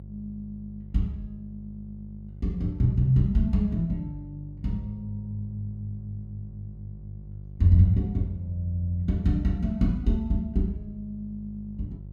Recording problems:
electrical hum; 50 Hz, harmonics up to 400 Hz, SNR 15 dB

